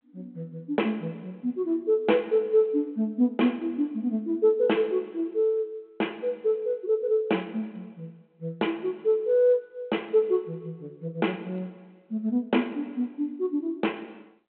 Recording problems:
telephone audio; 190 Hz to 3.2 kHz, G.726

